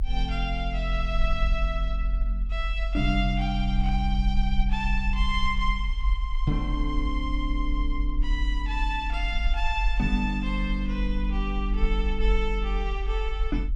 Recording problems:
rumble; below 46 Hz, strongest tone 44 Hz, SNR -1 dB

